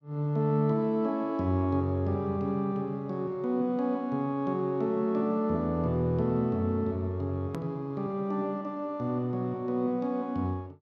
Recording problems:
click at an edit; at 7.5 s

